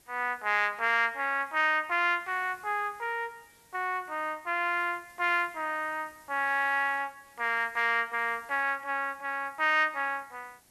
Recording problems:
hiss; slope -2 dB per octave, SNR 29 dB

